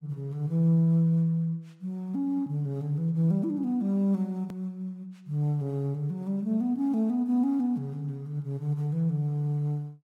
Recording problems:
click at an edit; at 4.5 s

